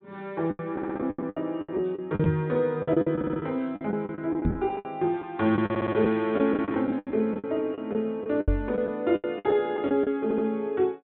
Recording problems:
treble cut off; nothing above 4 kHz
packet loss; 16% of the sound replaced, filled with the last packet
stutter; 4 times, first at 0.5 s
microphone bump; at 2 s, at 4.5 s and at 8.5 s; peak +5 dB vs average level

